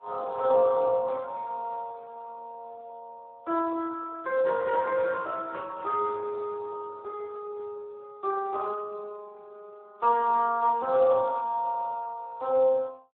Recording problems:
phone line; 280 Hz to 2.8 kHz, Speex

